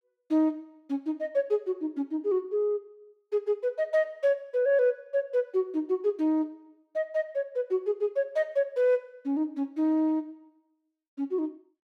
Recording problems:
none

